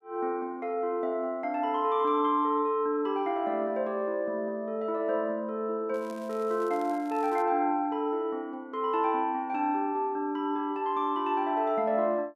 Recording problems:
crackling; from 6 to 7.5 s; loose cable, SNR 26 dB

